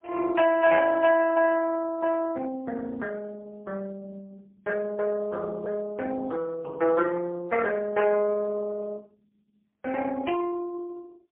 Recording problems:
telephone audio; 280 Hz to 2.5 kHz, AMR-NB, then MP3

